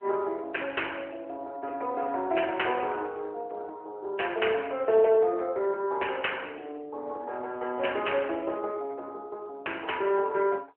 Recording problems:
telephone audio; 340 Hz to 3.1 kHz, AMR-NB

